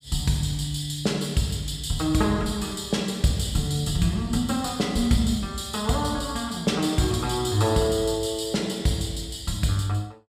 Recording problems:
none

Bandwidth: 15 kHz